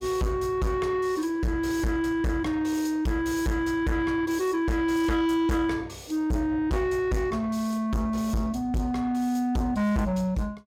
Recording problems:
distorted audio; soft clipping, signal-to-distortion ratio 6 dB

